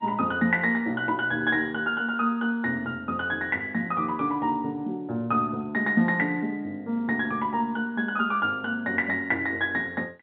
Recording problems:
phone line; 130 Hz to 3.7 kHz, G.711

